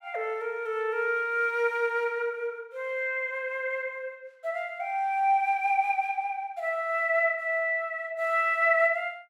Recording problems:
none

